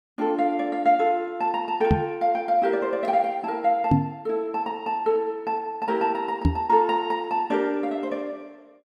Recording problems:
knock on the microphone; at 2 s, at 4 s and at 6.5 s; peak +8 dB vs average level

